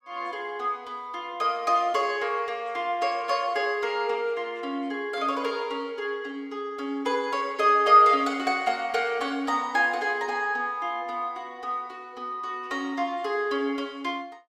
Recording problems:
none

